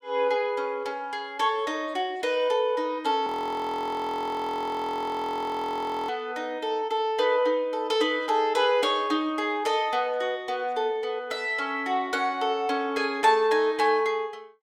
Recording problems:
audio freezing; at 3.5 s for 3 s

